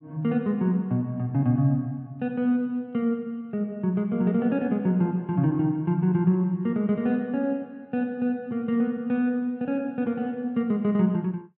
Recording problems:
none

